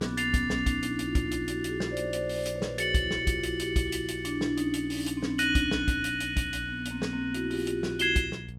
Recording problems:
electrical hum; 60 Hz, harmonics up to 480 Hz, SNR 13 dB

